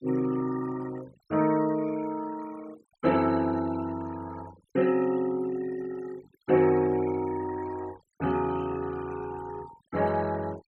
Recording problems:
noise reduction artefacts; signal-to-artefact ratio 18 dB

